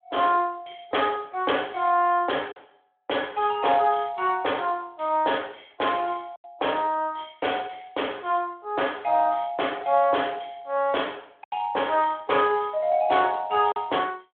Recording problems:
phone line; 370 Hz to 3.5 kHz, Speex
packet loss; 1.6% of the sound replaced, filled with silence

